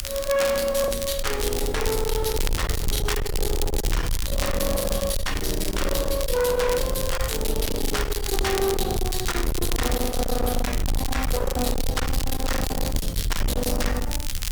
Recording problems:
distorted audio; hard clipping, uneven, signal-to-distortion ratio 6 dB
background hiss; slope 0 dB per octave, SNR 17 dB
rumble; below 90 Hz, SNR 4 dB
crackling; vinyl, SNR 7 dB
packet loss; 4% of the sound replaced, filled with the last packet

